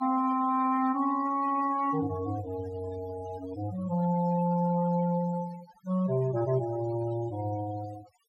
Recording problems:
noise reduction artefacts; signal-to-artefact ratio 17 dB

